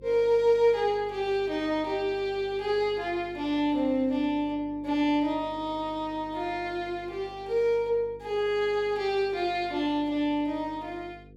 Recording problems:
hum; 50 Hz, harmonics up to 500 Hz, SNR 22 dB

